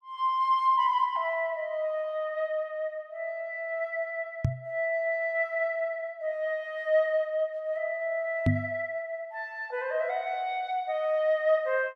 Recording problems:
knock on the microphone; at 4.5 s and at 8.5 s; peak +8 dB vs average level

